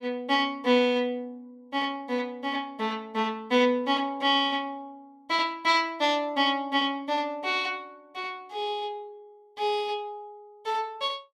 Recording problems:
none

